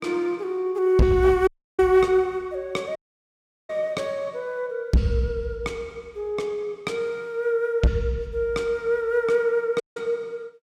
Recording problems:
distorted audio; hard clipping, signal-to-distortion ratio 10 dB
dropout; at 1.5 s, at 3 s for 0.5 s and at 10 s

